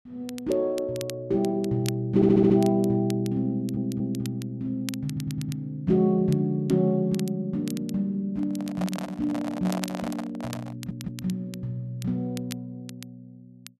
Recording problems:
crackling; vinyl, SNR 18 dB
stutter; 4 times, first at 2 s
handling noise; from 8.5 to 11 s; peak -5 dB vs average level

